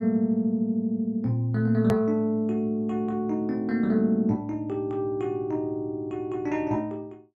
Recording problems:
edit click; at 2 s

